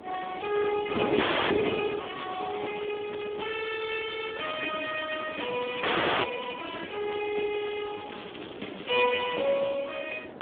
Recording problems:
phone line; 240 Hz to 3.4 kHz, Speex
wind noise; below 640 Hz, SNR 8 dB
audio freezing; at 1 s and at 6 s
crackling; from 1.5 to 6.5 s and from 7.5 to 9 s; loose cable, SNR 19 dB

